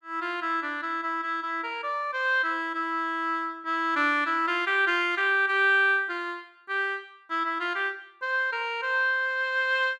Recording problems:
none

